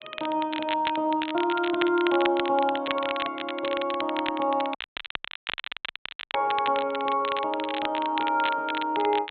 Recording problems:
treble missing; nothing above 4 kHz
crackle; vinyl, SNR 9 dB
dropout; at 5 s for 1.5 s

